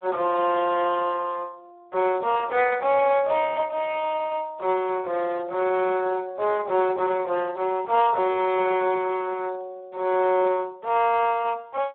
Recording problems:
telephone audio; 340 Hz to 3.7 kHz, Speex

